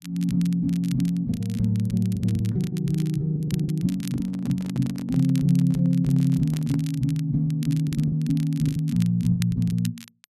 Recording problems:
crackling; vinyl, SNR 21 dB
lost packets; 8% of the sound replaced, filled with the last packet
handling noise; from 4 to 7 s; peak -8 dB vs average level

